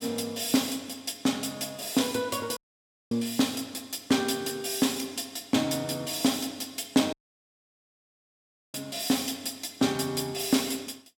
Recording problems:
dropout; at 2.5 s for 0.5 s and at 7 s for 1.5 s

